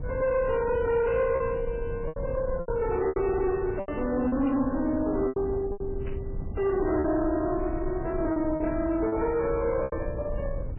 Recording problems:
lossy compression; MP3, log-spectral distance 2 dB, nothing above 2.7 kHz
distorted audio; soft clipping, signal-to-distortion ratio 10 dB
low-frequency rumble; below 140 Hz, SNR 9 dB
packet loss; 8% of the sound replaced, filled with repeated pitch periods
burst of static; at 2.5 s, at 4.5 s and at 6 s; peak -15 dB vs average level

